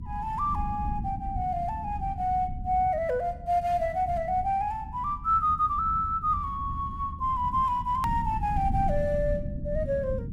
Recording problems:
low-frequency rumble; below 150 Hz, SNR 9 dB
edit click; at 8 s

